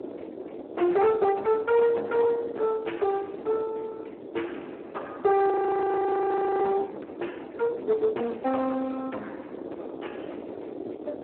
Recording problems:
phone line; 240 Hz to 3.1 kHz, Speex
distortion; soft clipping, signal-to-distortion ratio 11 dB
wind noise; below 580 Hz, SNR 13 dB
frozen audio; at 5.5 s for 1 s

